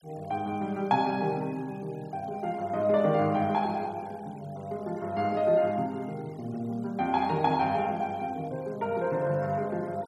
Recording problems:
denoising artefacts; signal-to-artefact ratio 27 dB

